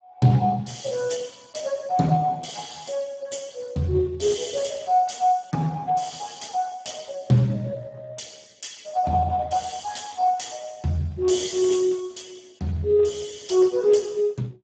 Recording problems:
codec artefacts; Speex, log-spectral distance 5 dB, nothing above 7.6 kHz

